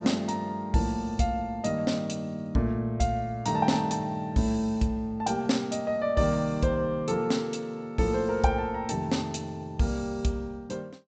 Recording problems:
low-pass filter; nothing above 8 kHz

